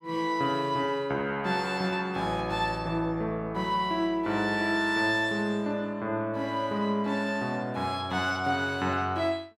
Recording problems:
none

